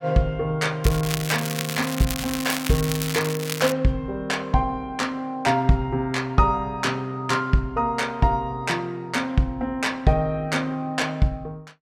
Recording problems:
crackling; from 1 to 3.5 s; loose cable, SNR 6 dB

